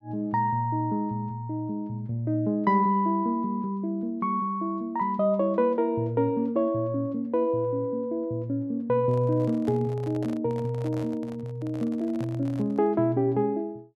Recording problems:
microphone handling noise; from 9 to 13 s; peak -10 dB vs average level

